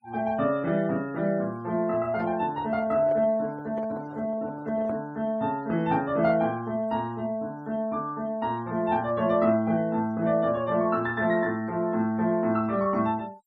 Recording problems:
denoising artefacts; signal-to-artefact ratio 26 dB
microphone handling noise; from 2 to 5 s; peak -8 dB vs average level

